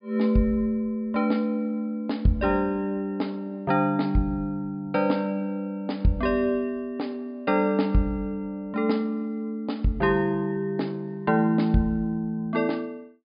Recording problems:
treble missing; nothing above 5 kHz

